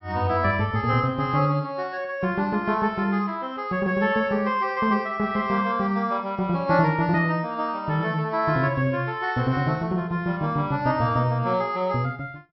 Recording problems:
treble cut off; nothing above 5.5 kHz

